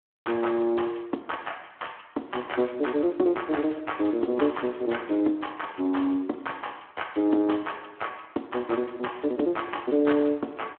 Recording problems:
telephone audio; 240 Hz to 3.3 kHz, Speex

